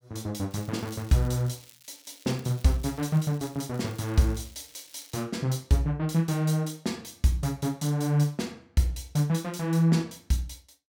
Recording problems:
crackle; from 0.5 to 3.5 s and from 3.5 to 5 s; loose cable, SNR 23 dB

